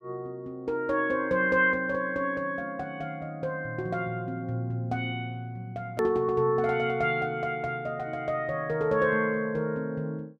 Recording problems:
edit click; at 6 s

